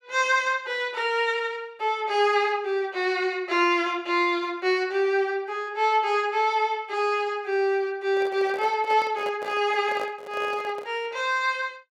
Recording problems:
handling noise; from 8 to 11 s; peak -7 dB vs average level

